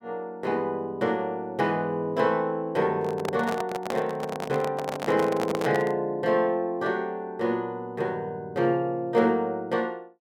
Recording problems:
microphone handling noise; from 3 to 6 s; peak +1 dB vs average level

